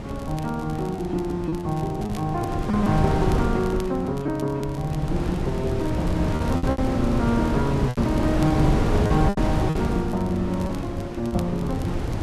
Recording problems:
wind noise; below 320 Hz, SNR 2 dB
crackling; vinyl, SNR 23 dB
packet loss; 6% of the sound replaced, filled with repeated pitch periods

